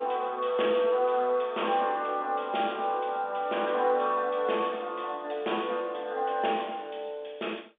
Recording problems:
phone line; 280 Hz to 3.6 kHz, G.711

